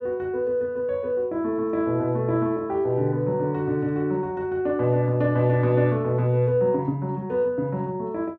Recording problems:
none

